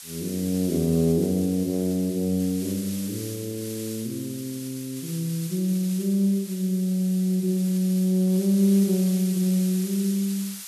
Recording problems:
hiss; slope +5 dB per octave, SNR 13 dB

